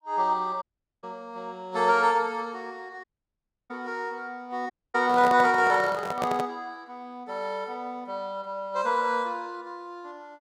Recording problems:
audio cutting out; at 0.5 s, at 3 s for 0.5 s and at 4.5 s
handling noise; from 5 to 6.5 s; peak 0 dB vs average level

